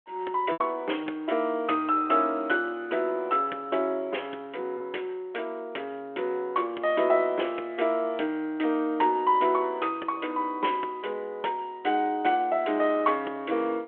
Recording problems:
telephone audio; 280 Hz to 3.3 kHz, G.726
packet loss; 0.9% of the sound replaced, filled with repeated pitch periods

